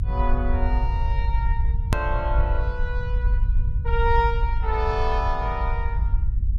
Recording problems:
low-frequency rumble; below 66 Hz, SNR -3 dB
hard cut with a click; at 2 s

